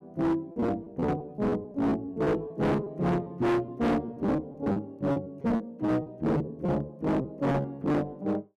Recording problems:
distorted audio; hard clipping, signal-to-distortion ratio 6 dB
lost packets; 12% of the sound replaced, filled with repeated pitch periods

